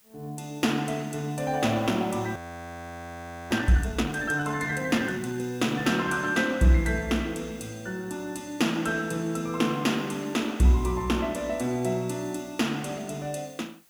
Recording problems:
background hiss; slope 0 dB per octave, SNR 28 dB
frozen audio; at 2.5 s for 1 s

